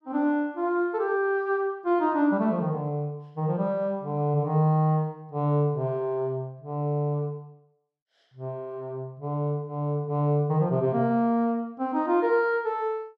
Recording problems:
none

